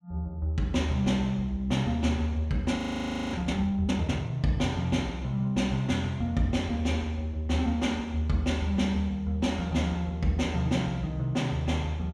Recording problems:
frozen audio; at 3 s for 0.5 s

